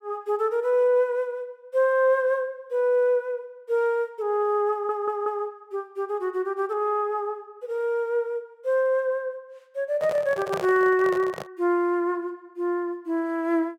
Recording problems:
stutter; at 4.5 s
microphone handling noise; from 10 to 11 s; peak -1 dB vs average level

